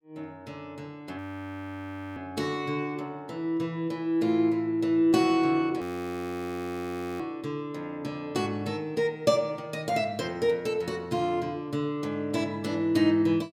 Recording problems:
frozen audio; at 1 s for 1 s and at 6 s for 1.5 s

